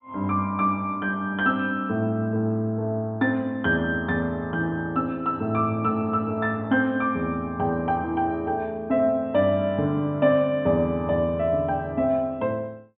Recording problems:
treble cut off; nothing above 4 kHz

